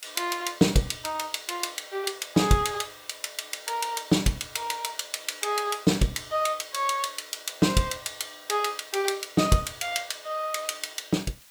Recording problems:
hiss; slope +2 dB per octave, SNR 23 dB

